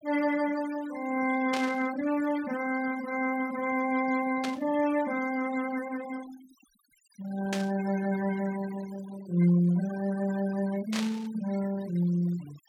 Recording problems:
noise reduction artefacts; signal-to-artefact ratio 16 dB
static burst; 4 times, first at 1.5 s; peak -1 dB vs average level

